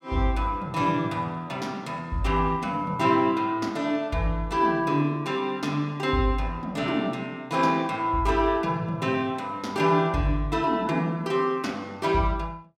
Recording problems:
none

